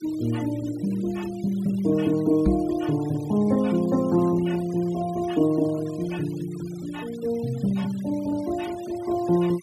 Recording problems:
denoising artefacts; signal-to-artefact ratio 22 dB
microphone bump; at 2.5 s; peak +6 dB vs average level

